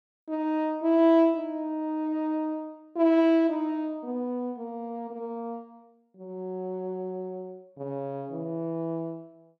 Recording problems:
none

